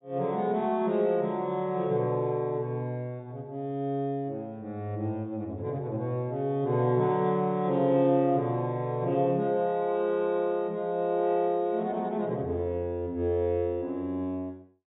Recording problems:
low-pass filter; nothing above 4 kHz

